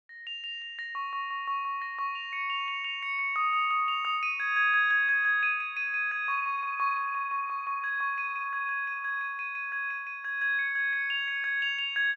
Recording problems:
none

